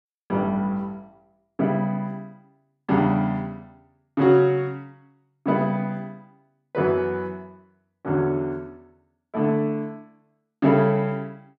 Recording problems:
none

